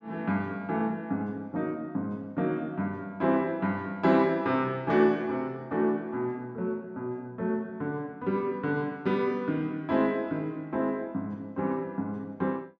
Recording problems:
none

